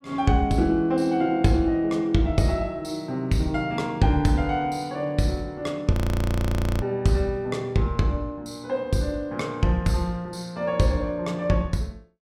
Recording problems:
audio freezing; at 6 s for 1 s

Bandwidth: 16 kHz